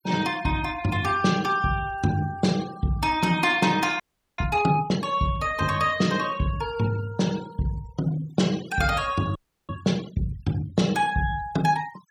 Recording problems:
noise reduction artefacts; signal-to-artefact ratio 19 dB
frozen audio; at 4 s and at 9.5 s

